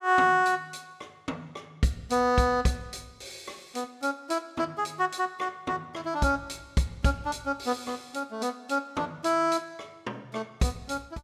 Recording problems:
none

